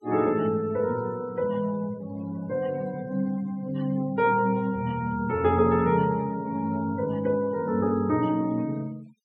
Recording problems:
noise reduction artefacts; signal-to-artefact ratio 24 dB

